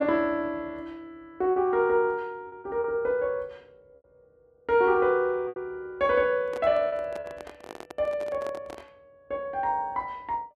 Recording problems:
lost packets; 4% of the sound replaced, filled with repeated pitch periods
microphone handling noise; from 6.5 to 9 s; peak -9 dB vs average level

